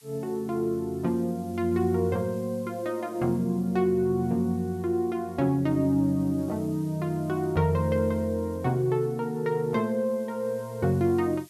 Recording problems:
hiss; slope +4 dB per octave, SNR 27 dB

